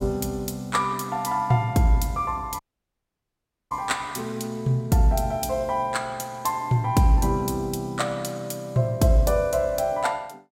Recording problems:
dropout; at 2.5 s for 1 s

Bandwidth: 16.5 kHz